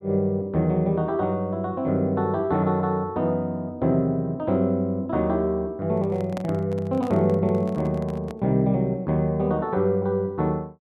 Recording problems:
microphone handling noise; from 6 to 8.5 s; peak -6 dB vs average level

